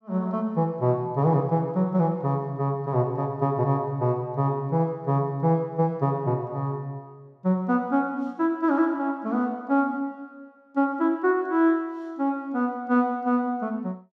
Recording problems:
none

